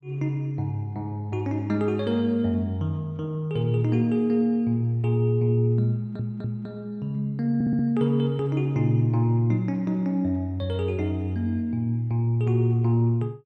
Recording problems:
stutter; at 6 s and at 7.5 s

